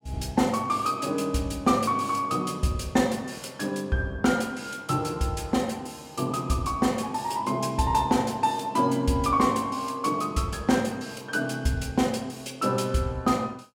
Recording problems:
none

